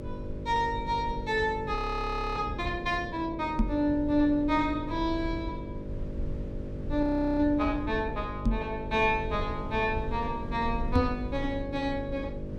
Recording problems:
hum; 50 Hz, harmonics up to 600 Hz, SNR 10 dB
low-frequency rumble; below 88 Hz, SNR 11 dB
audio freezing; at 2 s for 0.5 s and at 7 s
knock on the microphone; at 3.5 s, at 8.5 s and at 11 s; peak +7 dB vs average level

